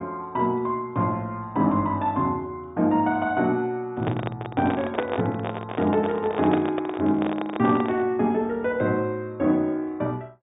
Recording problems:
treble missing; nothing above 3.7 kHz
handling noise; from 4 to 8 s; peak +3 dB vs average level

